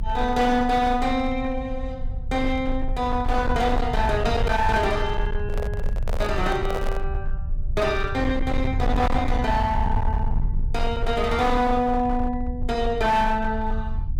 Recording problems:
distorted audio; hard clipping, signal-to-distortion ratio 10 dB
rumble; below 76 Hz, strongest tone 24 Hz, SNR 5 dB
microphone handling noise; from 5.5 to 7 s; peak -3 dB vs average level

